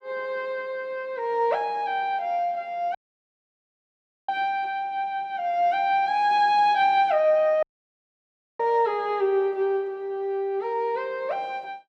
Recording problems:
audio cutting out; at 3 s for 1.5 s and at 7.5 s for 1 s

